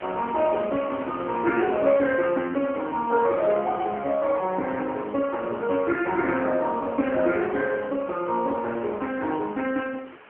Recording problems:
telephone audio; 220 Hz to 3.2 kHz, AMR-NB
background hiss; SNR 20 dB

